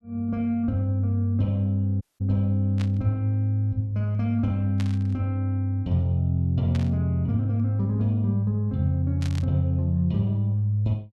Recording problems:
dropout; at 2 s
static burst; 4 times, first at 3 s; peak -10 dB vs average level

